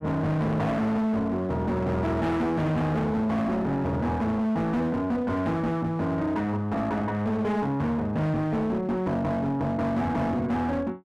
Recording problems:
distortion; hard clipping, signal-to-distortion ratio 8 dB

